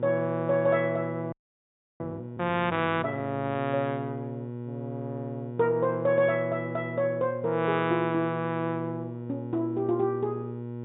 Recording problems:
low-pass filter; nothing above 4 kHz
mains hum; 60 Hz, harmonics up to 960 Hz, SNR 9 dB
audio freezing; at 1.5 s for 0.5 s

